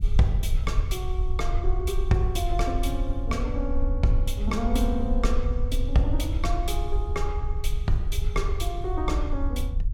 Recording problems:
rumble; below 58 Hz, SNR -1 dB

